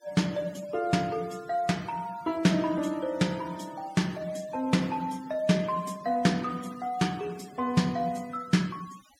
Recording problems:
denoising artefacts; signal-to-artefact ratio 22 dB

